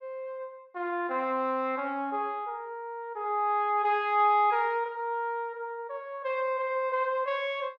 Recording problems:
none

